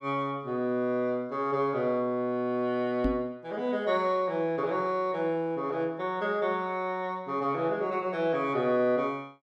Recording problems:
knock on the microphone; at 3 s; peak +3 dB vs average level

